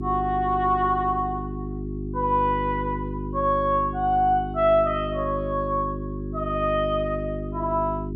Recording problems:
hum; 50 Hz, harmonics up to 400 Hz, SNR 7 dB

